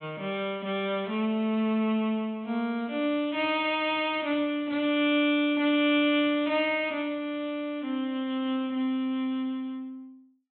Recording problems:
low-pass filter; nothing above 3.9 kHz

